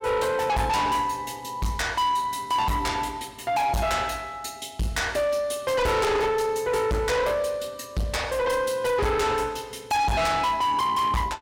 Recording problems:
distorted audio; soft clipping, signal-to-distortion ratio 6 dB

